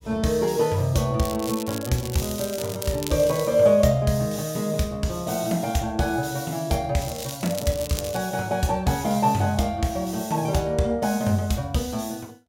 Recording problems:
crackling; 4 times, first at 1 s; loose cable, SNR 12 dB

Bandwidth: 16 kHz